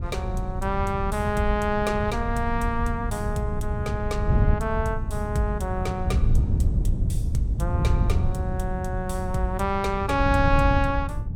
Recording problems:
wind noise; below 110 Hz, SNR 0 dB

